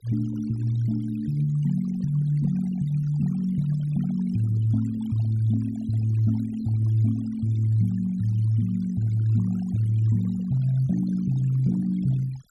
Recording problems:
denoising artefacts; signal-to-artefact ratio 21 dB

